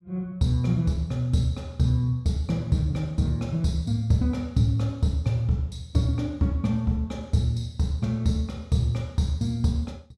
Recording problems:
none

